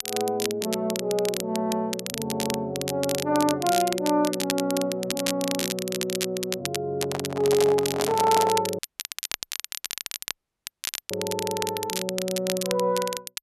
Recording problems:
crackling; vinyl, SNR 5 dB
microphone handling noise; from 7 to 8.5 s; peak +1 dB vs average level
audio cutting out; at 9 s for 2.5 s

